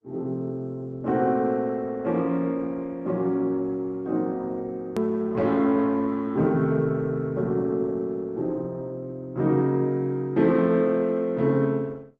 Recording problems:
codec artefacts; Opus, log-spectral distance 2 dB, nothing above 13.1 kHz
hard cut with a click; at 5 s

